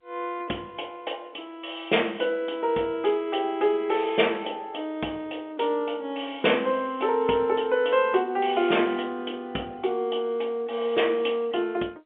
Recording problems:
telephone audio; 240 Hz to 3.6 kHz, G.711

